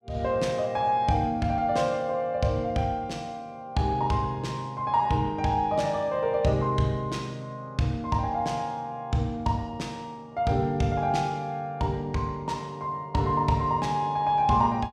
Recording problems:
none

